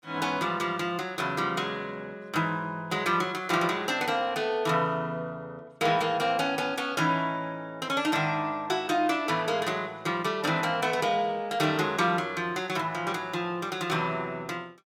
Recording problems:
none

